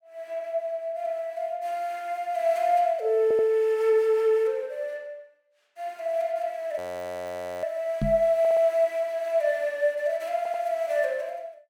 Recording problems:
stutter; at 3 s, at 8.5 s and at 10 s
frozen audio; at 7 s for 1 s
microphone bump; at 8 s; peak +2 dB vs average level

